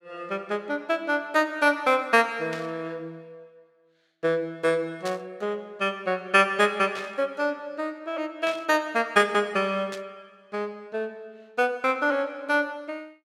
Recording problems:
burst of static; 5 times, first at 2.5 s; peak -7 dB vs average level

